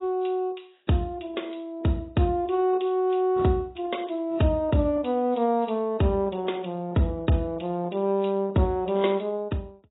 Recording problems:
lossy compression; AAC, log-spectral distance 3 dB, nothing above 3.8 kHz

